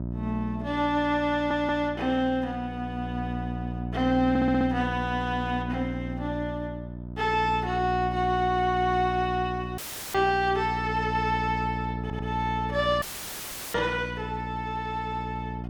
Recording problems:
mains hum; 60 Hz, harmonics up to 720 Hz, SNR 7 dB
audio stuttering; at 1.5 s, at 4.5 s and at 12 s
dropout; at 10 s and at 13 s for 0.5 s; filled with static

